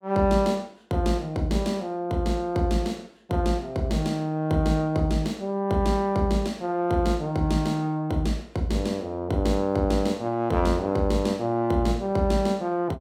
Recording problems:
none

